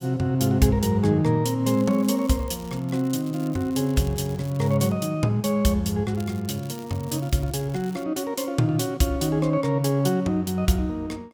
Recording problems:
crackling; from 1.5 to 5 s and from 6 to 8 s; loose cable, SNR 24 dB

